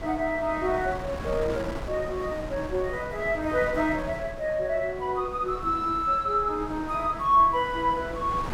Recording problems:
wind on the microphone; below 760 Hz, SNR 12 dB

